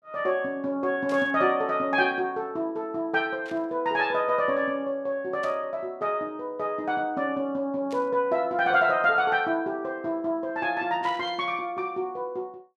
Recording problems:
burst of static; 5 times, first at 1 s; peak -13 dB vs average level

